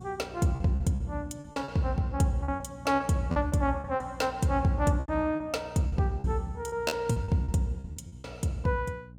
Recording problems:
hum; 60 Hz, harmonics up to 540 Hz, SNR 19 dB
lost packets; 12% of the sound replaced, filled with repeated pitch periods

